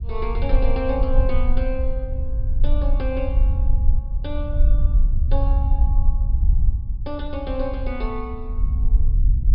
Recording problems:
treble missing; nothing above 5.5 kHz
low-frequency rumble; below 58 Hz, SNR -7 dB

